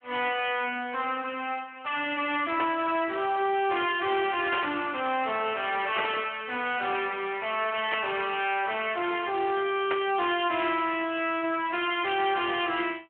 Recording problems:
telephone audio; 240 Hz to 3.2 kHz, Speex
distortion; hard clipping, signal-to-distortion ratio 9 dB
burst of static; 5 times, first at 2.5 s; peak 0 dB vs average level

